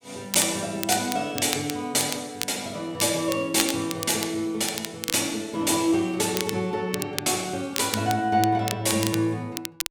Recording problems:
crackle; vinyl, SNR 8 dB

